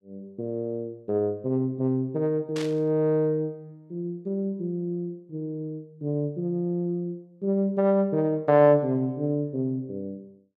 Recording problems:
static burst; at 2.5 s; peak -7 dB vs average level

